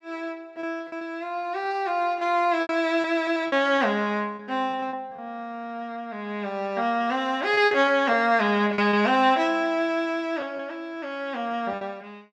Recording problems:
packet loss; 8% of the sound replaced, filled with repeated pitch periods

